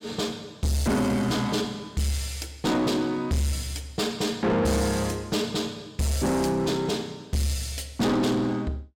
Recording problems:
distortion; soft clipping, signal-to-distortion ratio 8 dB

